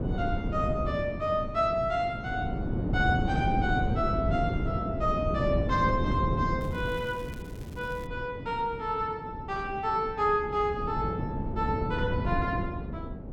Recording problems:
wind noise; below 270 Hz, SNR 2 dB
crackle; from 6.5 to 8 s; loose cable, SNR 24 dB

